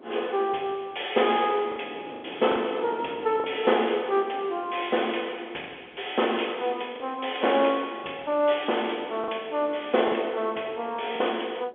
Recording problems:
telephone audio; 260 Hz to 3.5 kHz, G.711
wind on the microphone; below 620 Hz, SNR 18 dB
packet loss; 4% of the sound replaced, filled with the last packet

